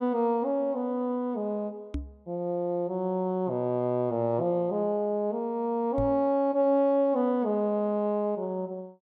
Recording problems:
microphone thump; at 2 s and at 6 s; peak -2 dB vs average level

